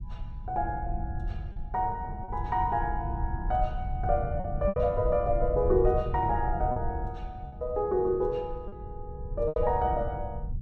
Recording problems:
low-frequency rumble; below 98 Hz, SNR 6 dB
lost packets; 4% of the sound replaced, filled with repeated pitch periods

